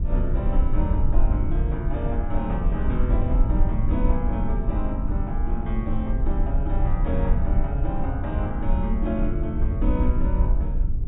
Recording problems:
low-pass filter; nothing above 4 kHz
rumble; below 64 Hz, SNR -4 dB

